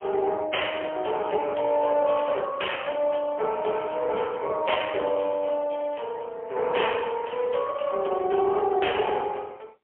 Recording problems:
phone line; 320 Hz to 3.2 kHz, AMR-NB, then MP3
crackling; at 2 s; loose cable, SNR 20 dB

